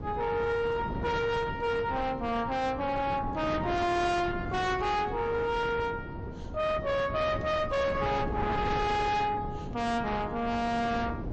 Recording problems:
lossy compression; MP3, log-spectral distance 2 dB, nothing above 8 kHz
distortion; soft clipping, signal-to-distortion ratio 6 dB
wind noise; below 450 Hz, SNR 8 dB

